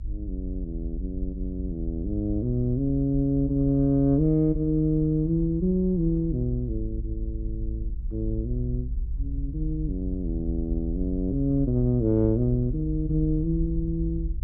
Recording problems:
rumble; below 58 Hz, SNR 8 dB

